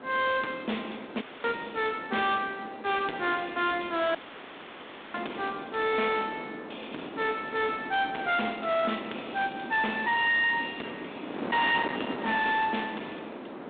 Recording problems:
phone line; 170 Hz to 3.7 kHz, G.726
distorted audio; hard clipping, signal-to-distortion ratio 6 dB
wind noise; below 1.4 kHz, SNR 11 dB
audio cutting out; at 1 s and at 4 s for 1 s

